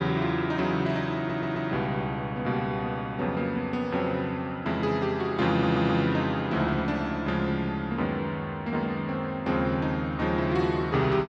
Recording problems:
stutter; at 1 s and at 5.5 s

